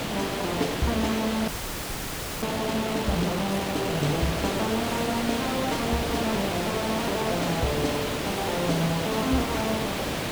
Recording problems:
hiss; slope -4 dB per octave, SNR 0 dB
audio freezing; at 1.5 s for 1 s

